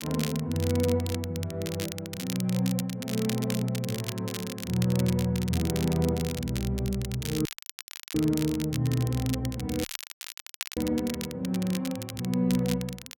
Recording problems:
crackle; vinyl, SNR 10 dB
audio cutting out; at 7.5 s for 0.5 s and at 10 s for 1 s

